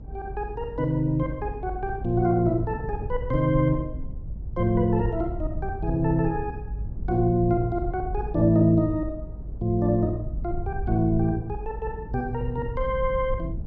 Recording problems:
treble cut off; nothing above 7.5 kHz
rumble; below 82 Hz, SNR 9 dB
wind noise; below 320 Hz, SNR 20 dB

